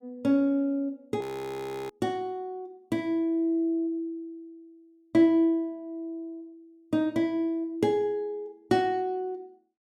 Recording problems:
audio freezing; at 1 s for 0.5 s

